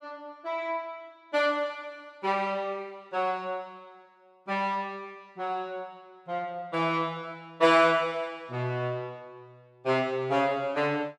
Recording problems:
none

